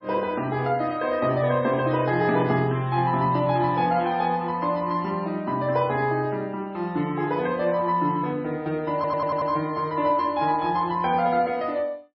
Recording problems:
lossy codec; MP3, log-spectral distance 2 dB
stutter; at 9 s

